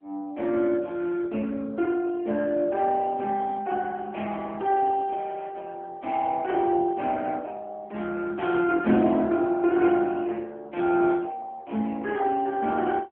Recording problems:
telephone audio; 240 Hz to 3.3 kHz, AMR-NB

